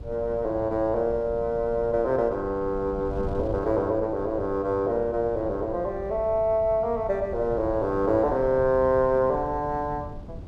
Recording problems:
wind on the microphone; below 180 Hz, SNR 14 dB

